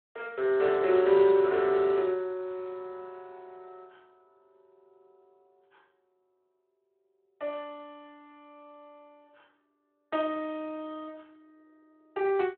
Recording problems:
phone line; 320 Hz to 3.8 kHz, Speex

